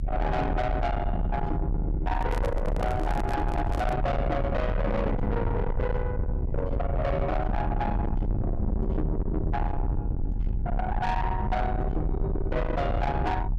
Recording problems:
distorted audio; soft clipping, signal-to-distortion ratio 7 dB
rumble; below 130 Hz, strongest tone 38 Hz, SNR 1 dB
handling noise; from 2 to 4 s; peak 0 dB vs average level

